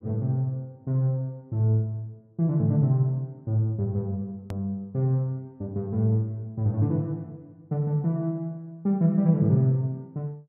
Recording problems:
click at an edit; at 4.5 s

